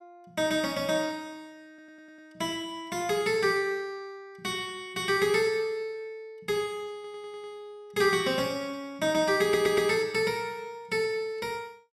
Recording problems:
audio stuttering; at 1.5 s, at 7 s and at 9.5 s

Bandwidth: 15.5 kHz